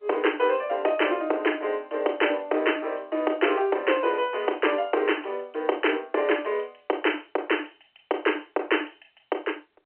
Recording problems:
telephone audio; 280 Hz to 3.1 kHz, G.711

